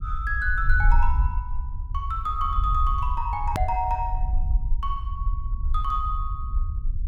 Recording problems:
low-frequency rumble; below 60 Hz, SNR 0 dB
click at an edit; at 3.5 s

